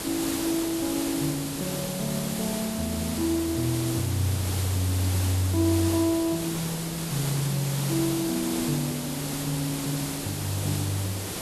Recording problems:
hiss; slope -3 dB per octave, SNR 4 dB

